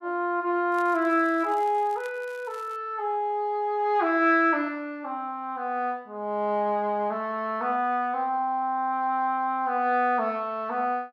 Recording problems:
crackle; from 0.5 to 3 s; loose cable, SNR 27 dB

